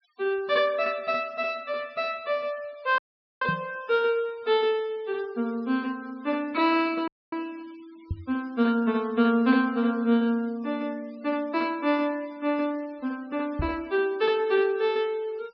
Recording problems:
treble missing; nothing above 5.5 kHz
denoising artefacts; signal-to-artefact ratio 27 dB
audio cutting out; at 3 s and at 7 s
microphone bump; at 3.5 s, at 8 s and at 14 s; peak 0 dB vs average level

